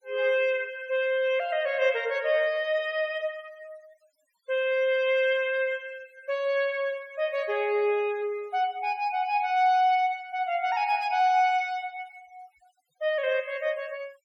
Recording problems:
denoising artefacts; signal-to-artefact ratio 26 dB

